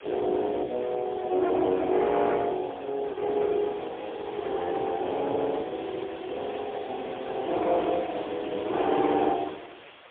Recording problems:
phone line; 240 Hz to 3.5 kHz, AMR-NB, then MP3
background hiss; SNR 19 dB

